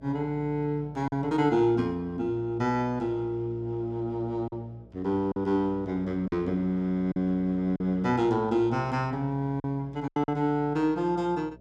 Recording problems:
hum; 60 Hz, harmonics up to 660 Hz, SNR 22 dB
lost packets; 3% of the sound replaced, filled with silence

